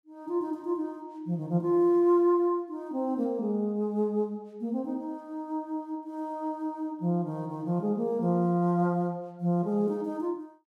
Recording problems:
none

